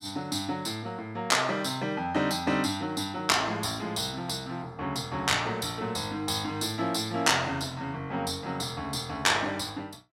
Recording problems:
none

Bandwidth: 16 kHz